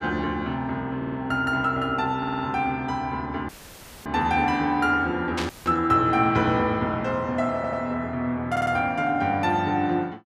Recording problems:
stutter; 4 times, first at 1 s
dropout; at 3.5 s for 0.5 s and at 5.5 s; filled with static
static burst; at 5.5 s; peak -2 dB vs average level

